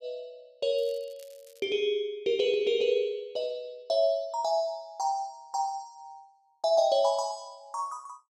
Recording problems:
crackle; at 1 s; loose cable, SNR 28 dB

